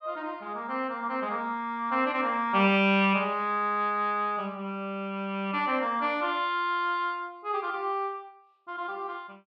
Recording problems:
none

